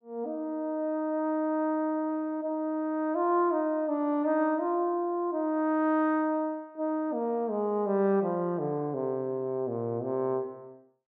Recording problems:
none

